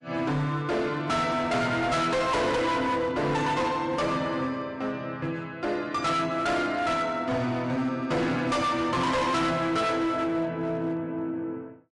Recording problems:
codec artefacts; MP3, log-spectral distance 2 dB, nothing above 11 kHz
distorted audio; hard clipping, signal-to-distortion ratio 7 dB

